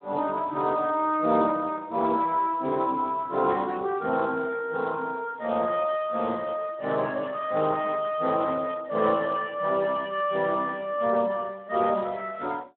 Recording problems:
phone line; 190 Hz to 3.7 kHz, Speex

